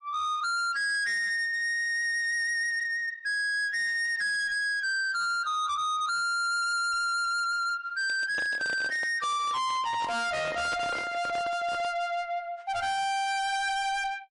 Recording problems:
codec artefacts; MP3, log-spectral distance 2 dB, nothing above 9.8 kHz
distorted audio; soft clipping, signal-to-distortion ratio 6 dB
microphone handling noise; from 8 to 12 s; peak -3 dB vs average level

